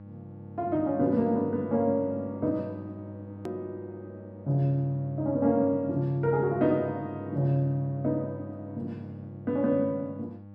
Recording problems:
hum; 50 Hz, harmonics up to 900 Hz, SNR 15 dB
click at an edit; at 3.5 s

